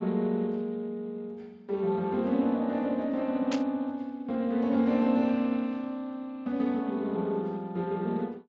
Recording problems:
lossy compression; Speex, log-spectral distance 2 dB
burst of static; at 3.5 s; peak -3 dB vs average level

